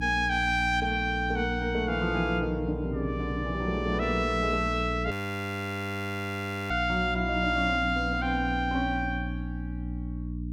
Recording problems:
mains hum; 60 Hz, harmonics up to 300 Hz, SNR 6 dB
audio freezing; at 5 s for 1.5 s

